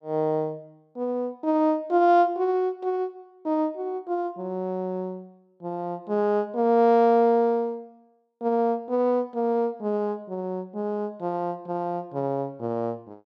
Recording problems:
none

